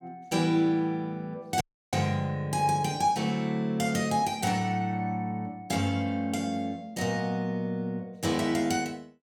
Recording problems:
audio cutting out; at 1.5 s

